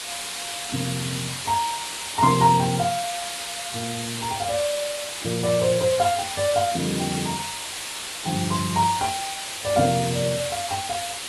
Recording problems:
codec artefacts; AAC, log-spectral distance 15 dB
hiss; SNR 5 dB

